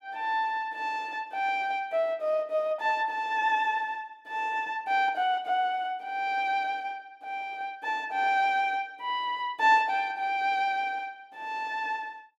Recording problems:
none

